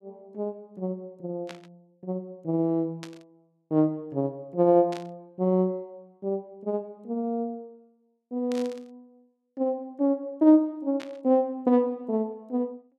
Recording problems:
static burst; 5 times, first at 1.5 s; peak -10 dB vs average level

